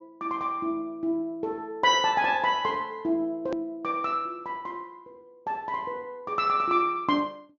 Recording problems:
treble missing; nothing above 7.2 kHz
click at an edit; at 3.5 s

